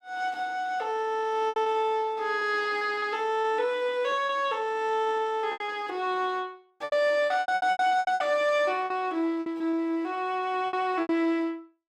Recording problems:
lost packets; 11% of the sound replaced, filled with repeated pitch periods

